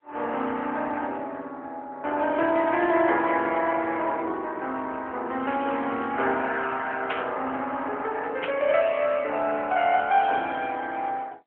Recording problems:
phone line; 300 Hz to 3.4 kHz, AMR-NB
static burst; at 7 s and at 8.5 s; peak -1 dB vs average level

